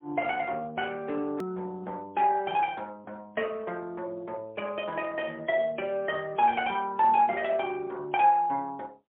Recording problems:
telephone audio; 260 Hz to 3.5 kHz, AMR-NB, then MP3
edit click; at 1.5 s

